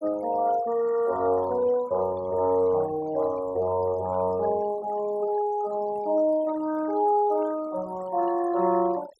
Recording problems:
noise reduction artefacts; signal-to-artefact ratio 20 dB

